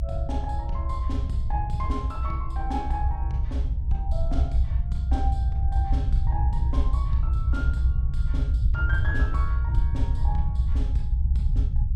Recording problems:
rumble; below 72 Hz, SNR -9 dB

